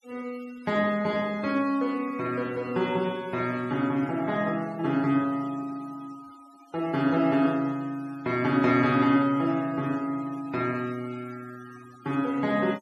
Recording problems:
noise reduction artefacts; signal-to-artefact ratio 23 dB

